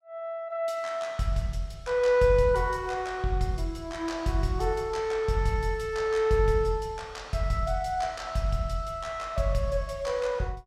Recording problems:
none

